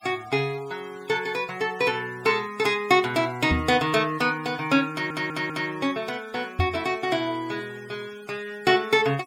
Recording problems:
denoising artefacts; signal-to-artefact ratio 23 dB
microphone bump; at 3.5 s and at 6.5 s; peak +4 dB vs average level
audio stuttering; at 5 s

